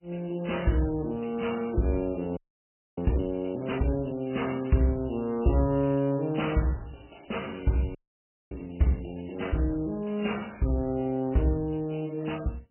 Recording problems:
lossy codec; MP3, log-spectral distance 7 dB, nothing above 3 kHz
audio freezing; at 2.5 s for 0.5 s and at 8 s for 0.5 s

